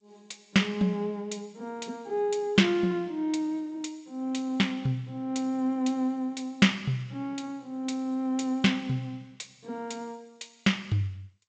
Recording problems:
lossy compression; G.722, log-spectral distance 2 dB, nothing above 18.9 kHz

